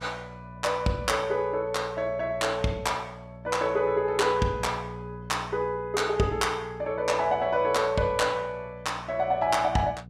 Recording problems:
hum; 60 Hz, harmonics up to 480 Hz, SNR 17 dB

